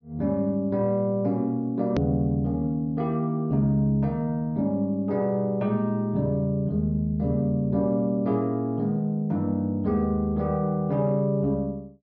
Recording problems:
treble cut off; nothing above 6.5 kHz
hard cut with a click; at 2 s

